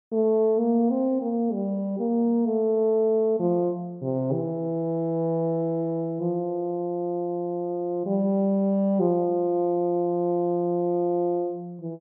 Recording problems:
none

